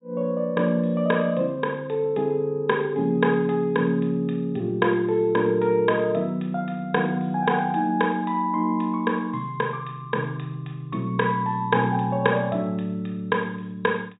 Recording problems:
treble missing; nothing above 4 kHz

